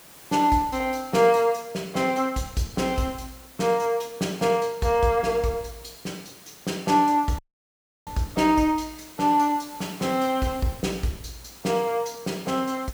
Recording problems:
hiss; slope -2 dB per octave, SNR 21 dB
dropout; at 7.5 s for 0.5 s

